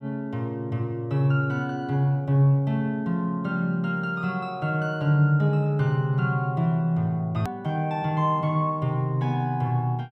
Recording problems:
click at an edit; at 7.5 s

